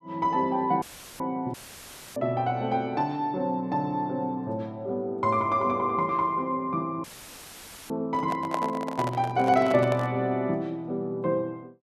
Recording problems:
audio cutting out; at 1 s, at 1.5 s for 0.5 s and at 7 s for 1 s; filled with static
microphone handling noise; from 8 to 10 s; peak 0 dB vs average level

